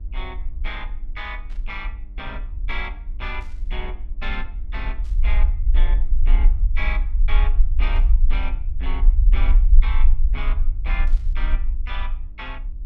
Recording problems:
electrical hum; 50 Hz, harmonics up to 1 kHz, SNR 20 dB
rumble; below 44 Hz, strongest tone 24 Hz, SNR -11 dB
burst of static; 5 times, first at 1.5 s; peak -13 dB vs average level

